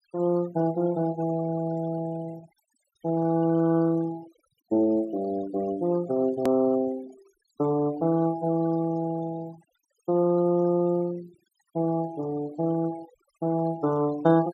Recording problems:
denoising artefacts; signal-to-artefact ratio 21 dB
edit click; at 6.5 s

